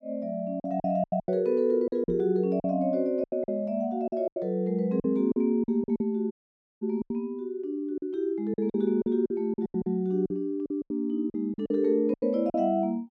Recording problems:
packet loss; 13% of the sound replaced, filled with silence
microphone bump; at 2 s; peak -3 dB vs average level
dropout; at 6.5 s for 0.5 s

